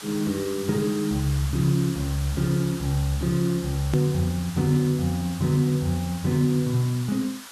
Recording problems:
background hiss; SNR 14 dB
edit click; at 4 s

